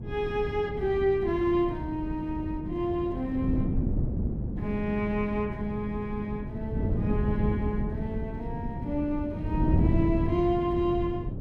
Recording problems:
wind noise; below 200 Hz, SNR 2 dB

